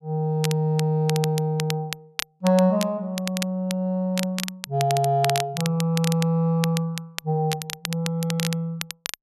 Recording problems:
crackle; vinyl, SNR 9 dB

